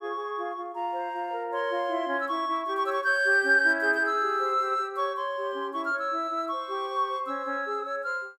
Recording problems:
none

